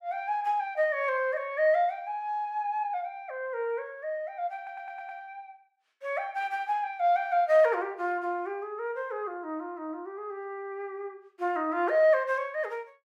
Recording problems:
audio stuttering; at 4.5 s

